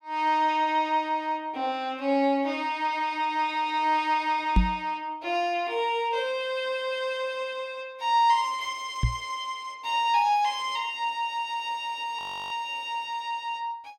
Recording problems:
knock on the microphone; at 4.5 s and at 9 s; peak +8 dB vs average level
audio freezing; at 12 s

